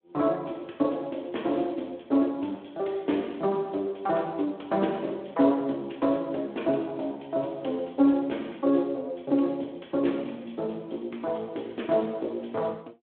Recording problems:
phone line; 220 Hz to 3.5 kHz, Speex

